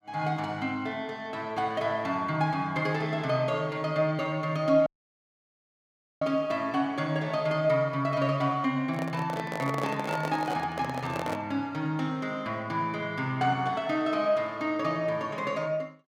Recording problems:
audio cutting out; at 5 s for 1.5 s
handling noise; from 9 to 11 s; peak -2 dB vs average level

